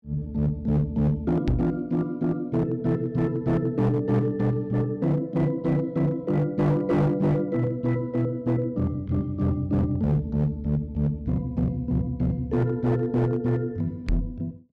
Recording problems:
distorted audio; hard clipping, signal-to-distortion ratio 11 dB
knock on the microphone; at 1.5 s and at 14 s; peak +5 dB vs average level

